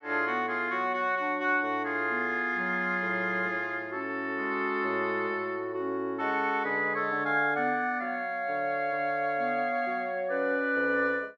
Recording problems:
none

